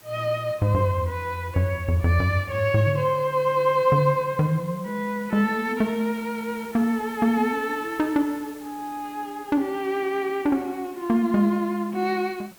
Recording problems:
hiss; slope -2 dB per octave, SNR 23 dB

